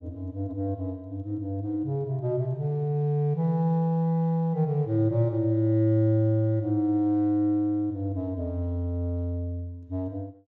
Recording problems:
none

